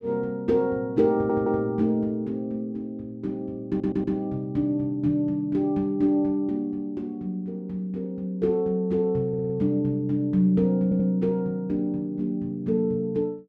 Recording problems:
stutter; 4 times, first at 1 s

